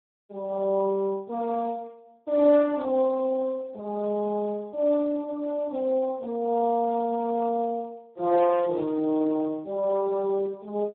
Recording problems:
telephone audio; 220 Hz to 2 kHz, Speex

